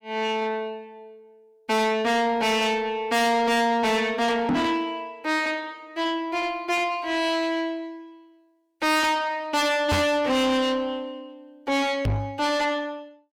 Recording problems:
distortion; soft clipping, signal-to-distortion ratio 6 dB
microphone bump; at 4.5 s, at 10 s and at 12 s; peak +6 dB vs average level

